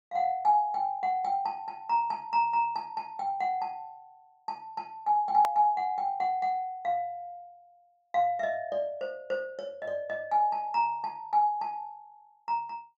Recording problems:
low-pass filter; nothing above 8 kHz
edit click; at 5.5 s

